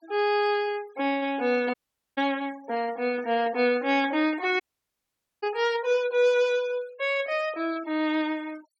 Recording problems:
denoising artefacts; signal-to-artefact ratio 23 dB
dropout; at 1.5 s and at 4.5 s for 1 s

